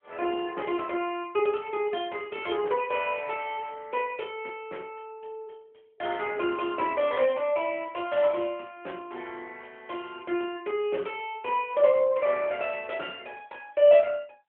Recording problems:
phone line; 280 Hz to 3.2 kHz, AMR-NB

